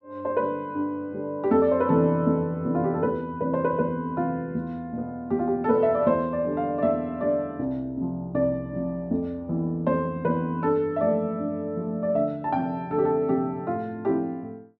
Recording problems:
none

